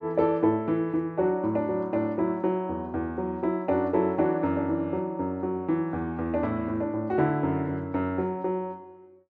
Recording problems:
none

